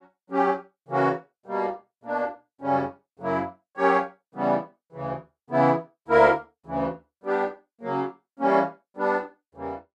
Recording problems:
none

